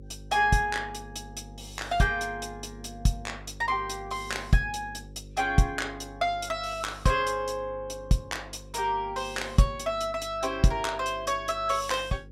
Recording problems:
hum; 50 Hz, harmonics up to 550 Hz, SNR 18 dB

